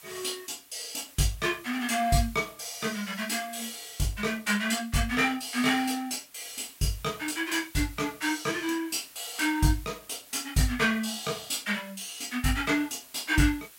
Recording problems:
background hiss; slope +1 dB per octave, SNR 21 dB

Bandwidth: 16 kHz